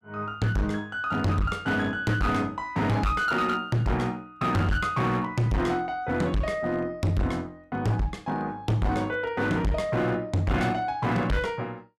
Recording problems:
distorted audio; hard clipping, signal-to-distortion ratio 6 dB

